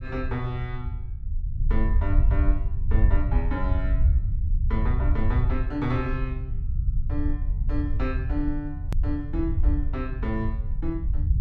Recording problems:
rumble; below 72 Hz, SNR -5 dB
hard cut with a click; at 9 s

